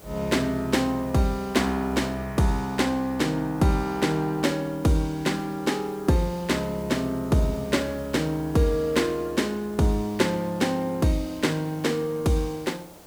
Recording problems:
background hiss; SNR 22 dB

